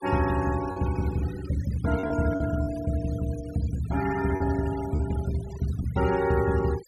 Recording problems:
noise reduction artefacts; signal-to-artefact ratio 15 dB
packet loss; 4% of the sound replaced, filled with repeated pitch periods

